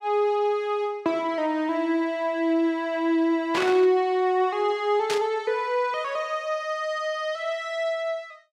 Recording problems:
burst of static; at 3.5 s and at 5 s; peak 0 dB vs average level

